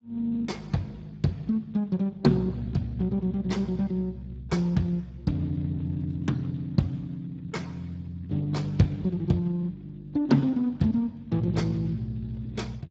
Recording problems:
lossy compression; Speex, log-spectral distance 2 dB, nothing above 7.3 kHz

